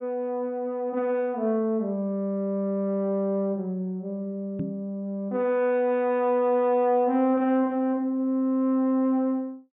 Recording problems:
treble cut off; nothing above 4 kHz
knock on the microphone; at 4.5 s; peak -2 dB vs average level

